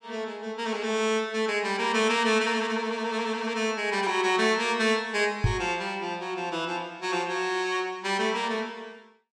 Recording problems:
knock on the microphone; at 5.5 s; peak +6 dB vs average level

